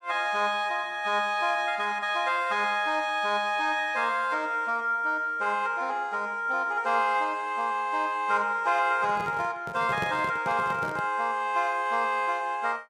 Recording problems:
handling noise; from 9 to 11 s; peak -3 dB vs average level

